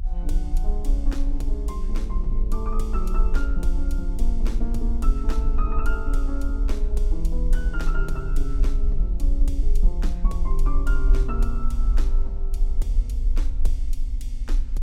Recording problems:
rumble; below 42 Hz, strongest tone 26 Hz, SNR -8 dB

